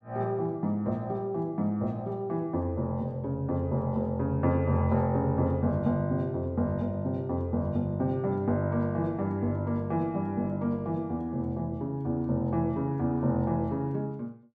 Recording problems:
none

